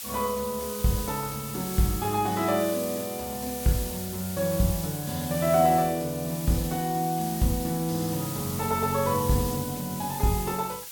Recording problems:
background hiss; slope +3 dB per octave, SNR 8 dB

